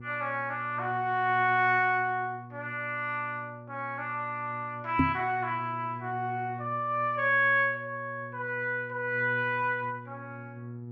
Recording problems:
hum; 60 Hz, harmonics up to 480 Hz, SNR 15 dB
knock on the microphone; at 5 s; peak +8 dB vs average level

